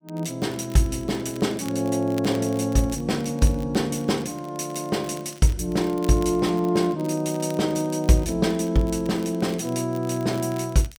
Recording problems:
crackle; vinyl, SNR 23 dB

